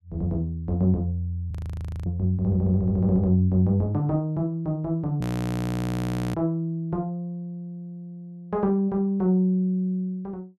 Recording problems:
audio freezing; at 1.5 s for 0.5 s and at 5 s for 1 s

